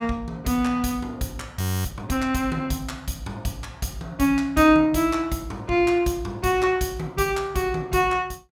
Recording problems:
audio freezing; at 1.5 s

